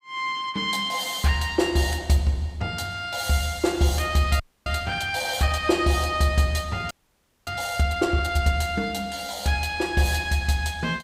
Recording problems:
audio freezing; at 4.5 s and at 7 s for 0.5 s

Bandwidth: 15.5 kHz